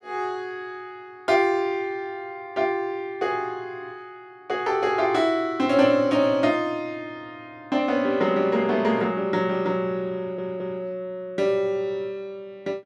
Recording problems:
stutter; at 10 s

